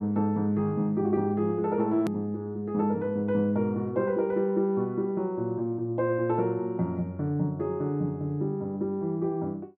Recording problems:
click at an edit; at 2 s

